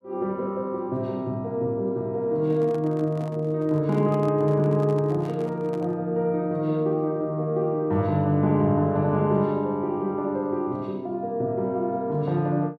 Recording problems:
handling noise; from 2.5 to 6 s; peak -12 dB vs average level

